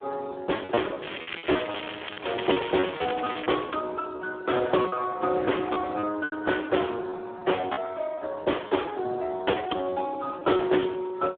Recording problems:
telephone audio; 280 Hz to 3.4 kHz, Speex
packet loss; 11% of the sound replaced, filled with repeated pitch periods
crackle; from 1 to 3.5 s; loose cable, SNR 9 dB

